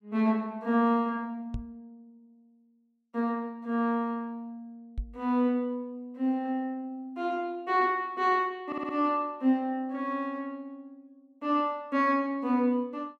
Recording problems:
microphone bump; at 1.5 s and at 5 s; peak -2 dB vs average level
stutter; at 8.5 s

